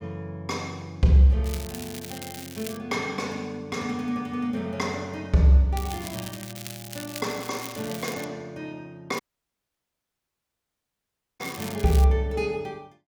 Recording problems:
crackle; from 1.5 to 3 s, from 6 to 8 s and from 9 to 12 s; loose cable, SNR 13 dB
audio cutting out; at 9 s for 2 s

